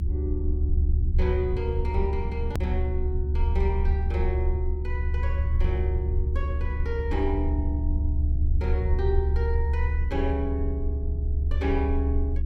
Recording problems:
hum; 60 Hz, harmonics up to 360 Hz, SNR 11 dB
low-frequency rumble; below 72 Hz, strongest tone 72 Hz, SNR -6 dB
hard cut with a click; at 2.5 s

